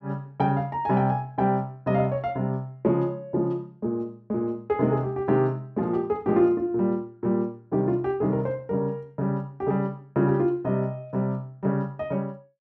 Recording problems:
none

